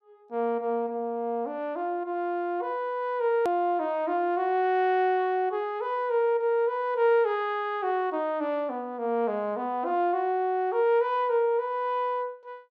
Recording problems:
hard cut with a click; at 3.5 s

